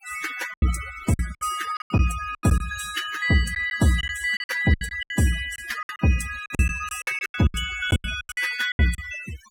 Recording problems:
denoising artefacts; signal-to-artefact ratio 12 dB
lost packets; 16% of the sound replaced, filled with silence

